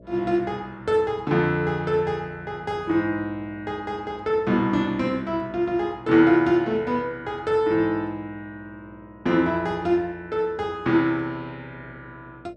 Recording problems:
electrical hum; 60 Hz, harmonics up to 660 Hz, SNR 26 dB

